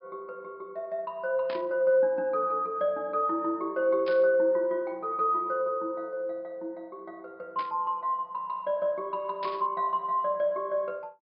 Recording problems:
treble cut off; nothing above 5.5 kHz
burst of static; 4 times, first at 1.5 s; peak -9 dB vs average level

